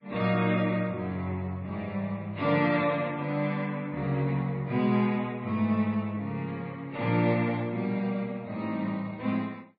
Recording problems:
codec artefacts; MP3, log-spectral distance 2 dB, nothing above 4.4 kHz

